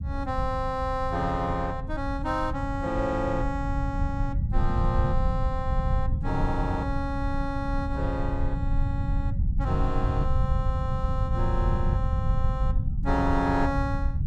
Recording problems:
rumble; below 100 Hz, SNR -1 dB

